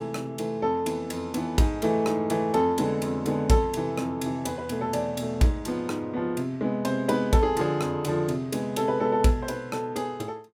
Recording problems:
none

